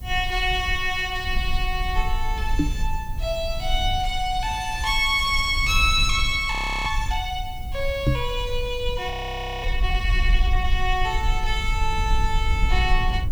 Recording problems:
hiss; slope +4 dB per octave, SNR 26 dB
low-frequency rumble; below 54 Hz, SNR 4 dB
knock on the microphone; at 2.5 s and at 8 s; peak +7 dB vs average level
frozen audio; at 6.5 s and at 9 s for 0.5 s

